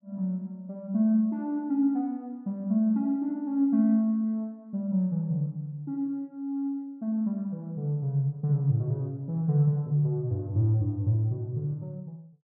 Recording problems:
none

